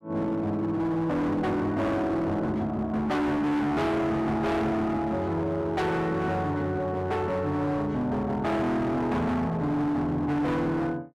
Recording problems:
distortion; hard clipping, signal-to-distortion ratio 7 dB

